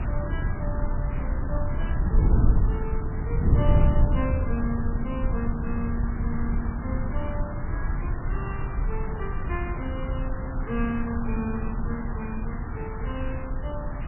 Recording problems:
lossy codec; MP3, log-spectral distance 4 dB, nothing above 2.4 kHz
background hiss; SNR 6 dB
wind on the microphone; below 110 Hz, SNR -6 dB

